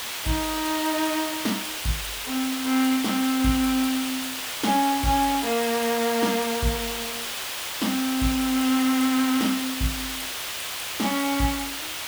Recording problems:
background hiss; SNR 4 dB

